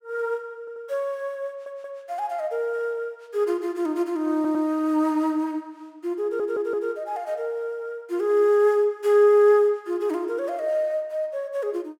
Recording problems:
audio stuttering; 4 times, first at 0.5 s

